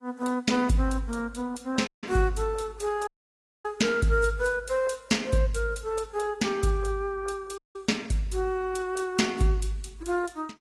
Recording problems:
codec artefacts; AAC, log-spectral distance 3 dB, nothing above 11.3 kHz
dropout; at 2 s, at 3 s for 0.5 s and at 7.5 s

